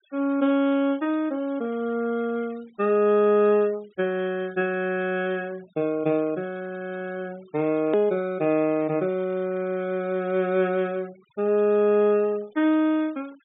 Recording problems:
low-pass filter; nothing above 4 kHz
denoising artefacts; signal-to-artefact ratio 27 dB
click at an edit; at 8 s

